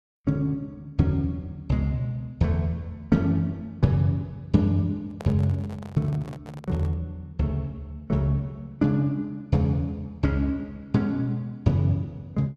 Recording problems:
microphone handling noise; from 5 to 7 s; peak -8 dB vs average level

